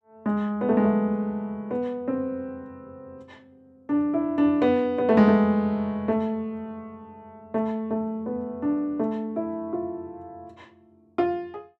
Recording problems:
none

